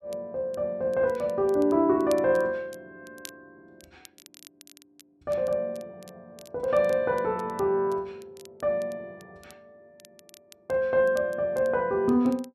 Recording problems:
crackling; vinyl, SNR 26 dB

